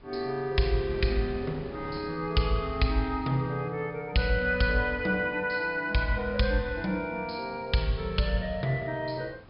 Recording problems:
low-pass filter; nothing above 5.5 kHz
wind on the microphone; below 600 Hz, SNR 21 dB

